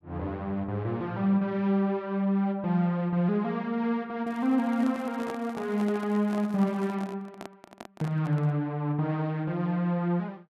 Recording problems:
crackle; from 4.5 to 7 s; loose cable, SNR 29 dB
microphone handling noise; from 4.5 to 8.5 s; peak -6 dB vs average level

